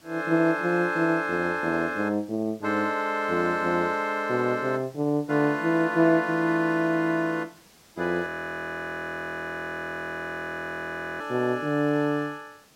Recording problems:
hiss; slope -2 dB per octave, SNR 29 dB
audio freezing; at 8.5 s for 3 s

